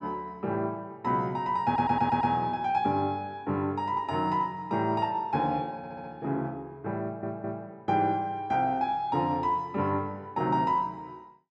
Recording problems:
audio stuttering; at 1.5 s, at 6 s and at 7 s

